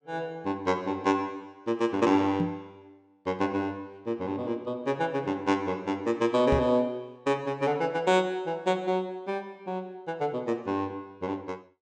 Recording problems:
microphone bump; at 2.5 s and at 6.5 s; peak +2 dB vs average level

